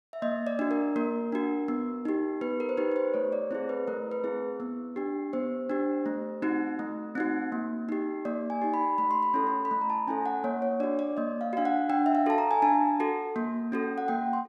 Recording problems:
none

